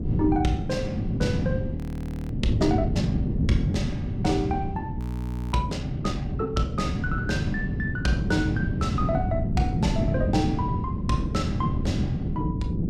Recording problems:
wind on the microphone; below 220 Hz, SNR -2 dB
audio freezing; at 2 s for 0.5 s and at 5 s for 0.5 s

